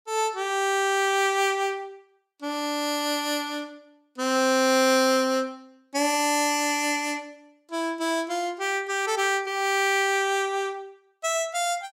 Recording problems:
none

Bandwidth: 16.5 kHz